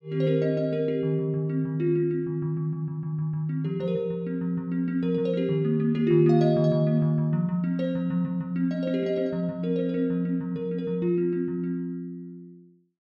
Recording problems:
none

